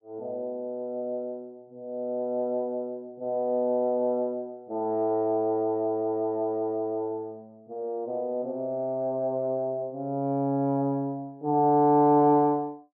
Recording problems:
none

